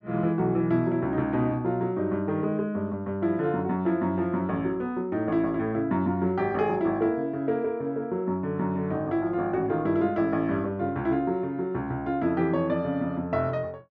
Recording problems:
low-pass filter; nothing above 6.8 kHz

